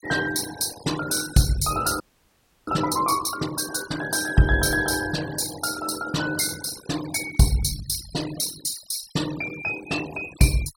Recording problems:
denoising artefacts; signal-to-artefact ratio 13 dB
frozen audio; at 2 s for 0.5 s

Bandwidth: 16.5 kHz